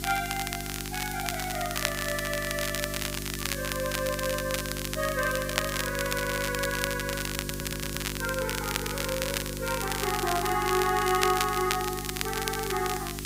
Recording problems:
hum; 50 Hz, harmonics up to 400 Hz, SNR 7 dB
hiss; slope +1 dB per octave, SNR 9 dB
crackling; vinyl, SNR 3 dB
audio stuttering; at 6 s, at 7.5 s and at 12 s

